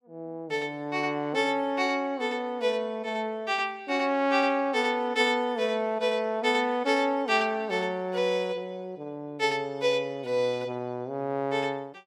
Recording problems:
none

